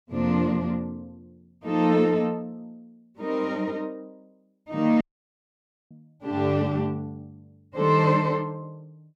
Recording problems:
dropout; at 5 s for 1 s

